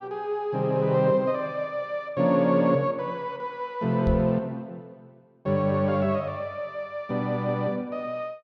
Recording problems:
microphone thump; at 4 s; peak +2 dB vs average level

